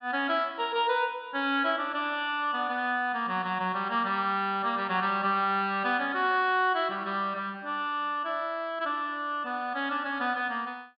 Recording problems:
low-pass filter; nothing above 5.5 kHz

